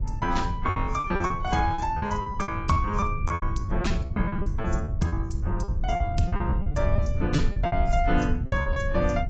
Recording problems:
lossy codec; AAC, log-spectral distance 2 dB, nothing above 7.3 kHz
rumble; below 94 Hz, SNR 2 dB
lost packets; 16% of the sound replaced, filled with repeated pitch periods

